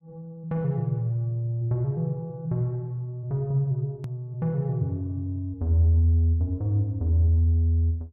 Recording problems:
click at an edit; at 4 s

